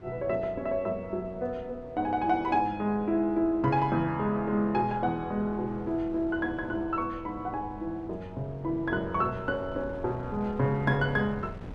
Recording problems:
wind on the microphone; below 280 Hz, SNR 17 dB

